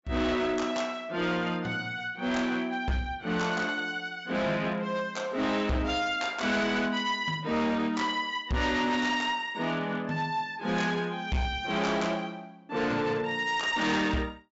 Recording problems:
treble missing; nothing above 8 kHz
distortion; hard clipping, signal-to-distortion ratio 10 dB

